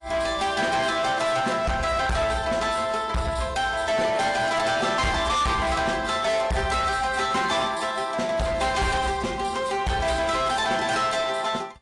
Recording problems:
codec artefacts; AAC, log-spectral distance 4 dB, nothing above 10.4 kHz
distortion; hard clipping, uneven, signal-to-distortion ratio 8 dB

